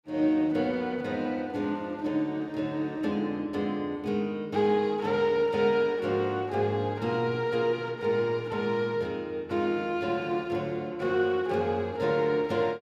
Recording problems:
none

